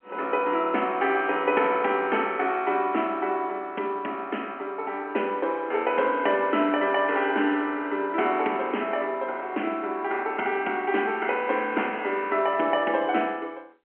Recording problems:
telephone audio; 240 Hz to 3.2 kHz, G.711

